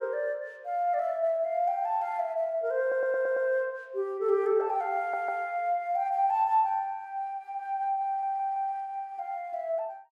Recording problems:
audio stuttering; at 3 s, at 5 s and at 8 s

